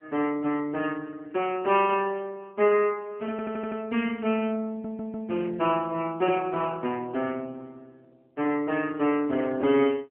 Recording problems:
telephone audio; 260 Hz to 3.1 kHz, AMR-NB
stutter; at 3.5 s and at 4.5 s

